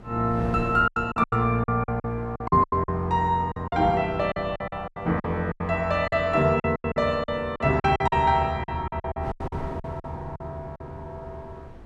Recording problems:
wind noise; below 470 Hz, SNR 18 dB
lost packets; 15% of the sound replaced, filled with silence

